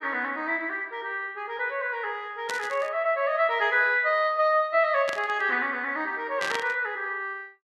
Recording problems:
burst of static; at 2.5 s, at 5 s and at 6.5 s; peak -1 dB vs average level

